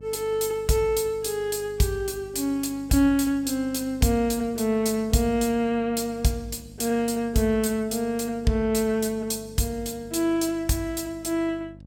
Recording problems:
electrical hum; 50 Hz, harmonics up to 600 Hz, SNR 21 dB

